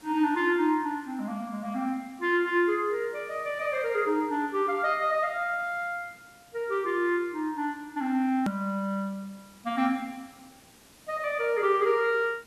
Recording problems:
hiss; slope -2 dB per octave, SNR 27 dB
hard cut with a click; at 8.5 s

